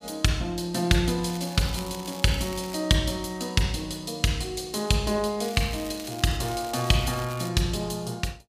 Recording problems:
crackle; from 1 to 2.5 s, at 5.5 s and from 6.5 to 7.5 s; loose cable, SNR 15 dB

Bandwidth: 15 kHz